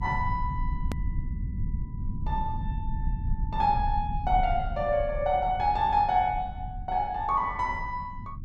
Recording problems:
rumble; below 100 Hz, SNR 7 dB
hard cut with a click; at 1 s

